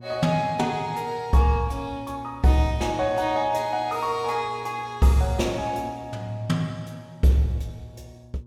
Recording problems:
hum; 60 Hz, harmonics up to 600 Hz, SNR 21 dB

